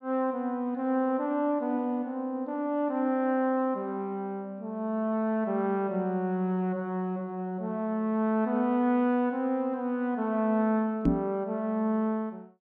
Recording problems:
microphone thump; at 11 s; peak +8 dB vs average level

